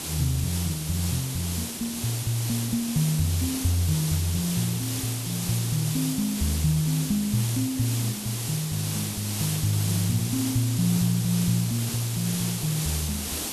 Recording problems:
background hiss; SNR 4 dB

